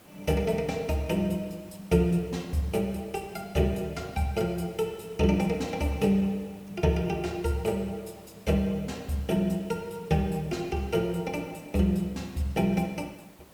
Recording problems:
background hiss; slope -5 dB per octave, SNR 24 dB

